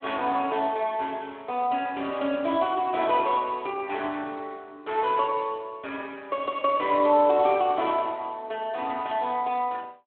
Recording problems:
phone line; 220 Hz to 3.5 kHz, Speex

